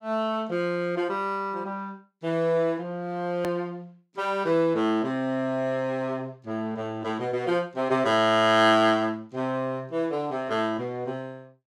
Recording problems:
click at an edit; at 3.5 s

